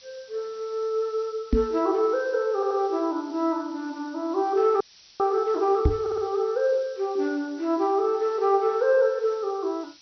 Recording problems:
low-pass filter; nothing above 5.8 kHz
hiss; SNR 25 dB
microphone bump; at 1.5 s and at 6 s; peak +7 dB vs average level
audio stuttering; at 2.5 s and at 6 s
audio freezing; at 5 s

